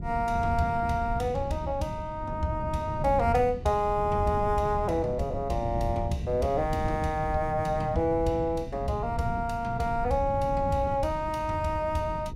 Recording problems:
wind noise; below 160 Hz, SNR 8 dB

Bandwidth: 16 kHz